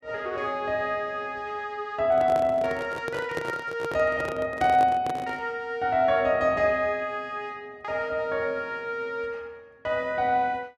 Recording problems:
handling noise; from 2 to 5.5 s; peak -2 dB vs average level

